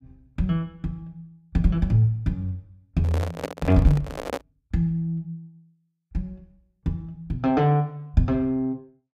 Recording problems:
microphone handling noise; from 3 to 4.5 s; peak 0 dB vs average level

